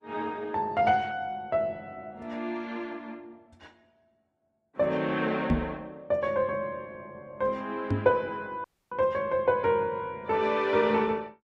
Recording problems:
lossy compression; Opus, log-spectral distance 2 dB
microphone bump; at 5.5 s and at 8 s; peak +6 dB vs average level
dropout; at 8.5 s

